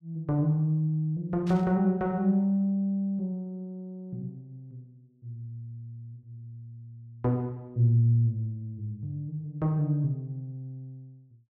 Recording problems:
burst of static; at 1.5 s; peak -13 dB vs average level

